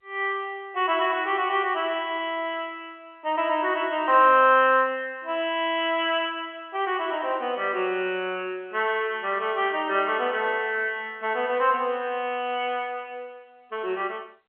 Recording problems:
telephone audio; 220 Hz to 3.2 kHz, G.711

